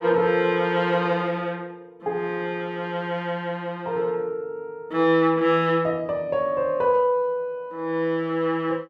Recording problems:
none

